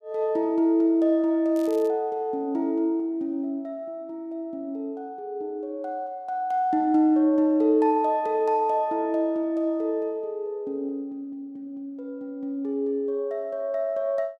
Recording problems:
crackling; at 1.5 s; loose cable, SNR 25 dB

